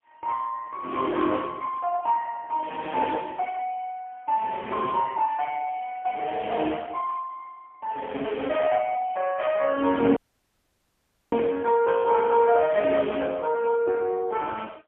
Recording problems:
telephone audio; 240 Hz to 3.3 kHz, AMR-NB, then MP3
audio cutting out; at 10 s for 1 s

